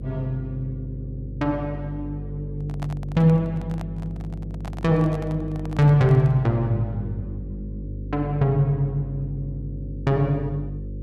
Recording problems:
mains hum; 50 Hz, harmonics up to 550 Hz, SNR 10 dB
handling noise; from 2.5 to 6.5 s; peak -8 dB vs average level

